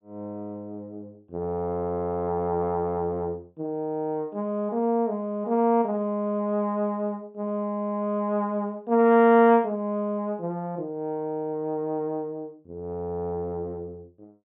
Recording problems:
treble cut off; nothing above 3.7 kHz

